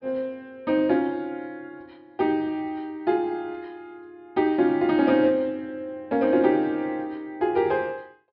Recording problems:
low-pass filter; nothing above 5.3 kHz

